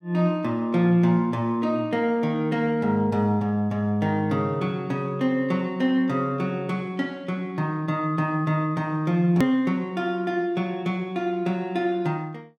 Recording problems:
click at an edit; at 9.5 s

